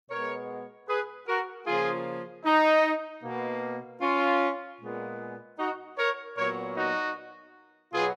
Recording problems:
none

